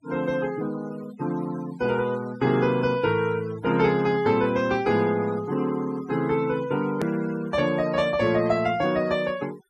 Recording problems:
denoising artefacts; signal-to-artefact ratio 19 dB
hard cut with a click; at 7 s

